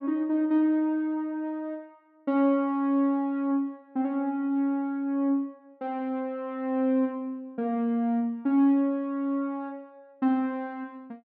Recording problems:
none

